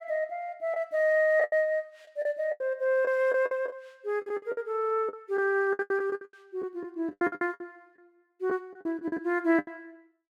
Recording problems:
packet loss; 16% of the sound replaced, filled with the last packet

